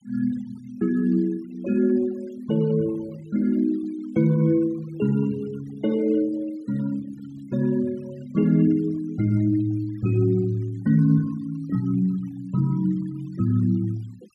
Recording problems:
denoising artefacts; signal-to-artefact ratio 26 dB

